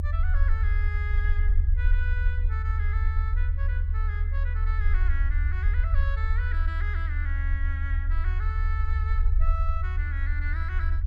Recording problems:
rumble; below 76 Hz, strongest tone 34 Hz, SNR -11 dB

